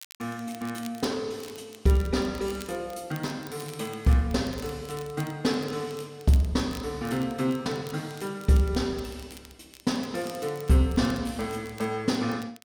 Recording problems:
crackling; vinyl, SNR 20 dB

